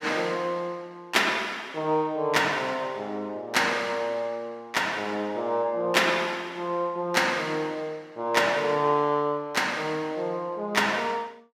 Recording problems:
none

